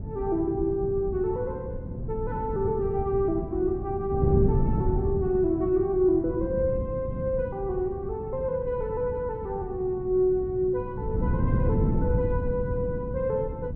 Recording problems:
wind on the microphone; below 190 Hz, SNR 4 dB

